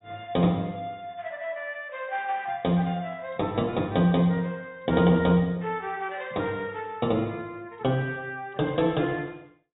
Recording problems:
low-pass filter; nothing above 4 kHz

